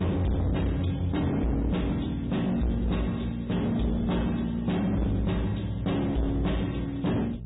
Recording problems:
low-pass filter; nothing above 3.8 kHz
lossy codec; MP3, log-spectral distance 3 dB
distortion; hard clipping, signal-to-distortion ratio 8 dB
electrical hum; 60 Hz, harmonics up to 480 Hz, SNR 10 dB

